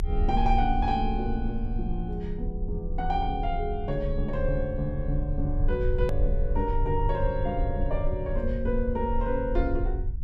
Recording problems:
rumble; below 58 Hz, strongest tone 28 Hz, SNR 2 dB
click at an edit; at 6 s

